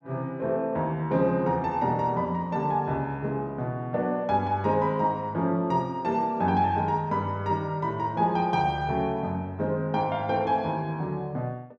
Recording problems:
none

